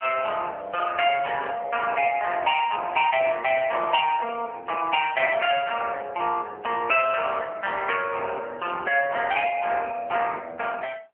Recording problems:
telephone audio; 280 Hz to 3.1 kHz, AMR-NB

